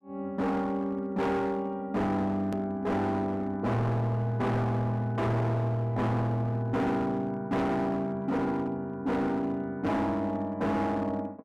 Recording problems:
distortion; hard clipping, signal-to-distortion ratio 8 dB
click at an edit; at 2.5 s

